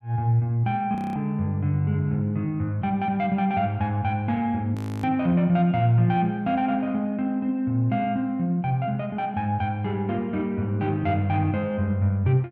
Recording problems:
frozen audio; at 1 s and at 5 s

